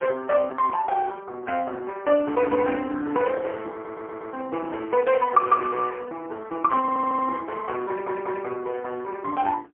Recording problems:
telephone audio; 260 Hz to 3 kHz, AMR-NB, then MP3
stutter; at 3.5 s, at 7 s and at 8 s

